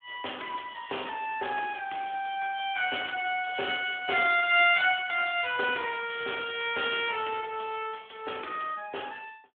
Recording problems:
phone line; 300 Hz to 3.4 kHz, Speex

